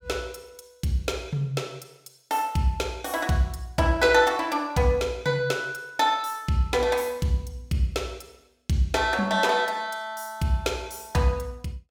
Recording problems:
none

